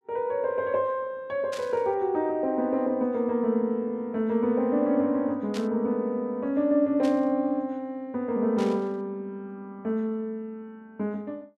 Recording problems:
static burst; 4 times, first at 1.5 s; peak -8 dB vs average level

